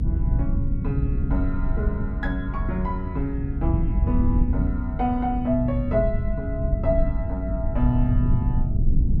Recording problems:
rumble; below 100 Hz, SNR -2 dB

